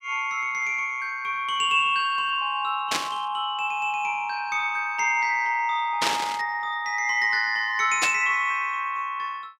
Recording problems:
static burst; at 3 s, at 6 s and at 8 s; peak +4 dB vs average level

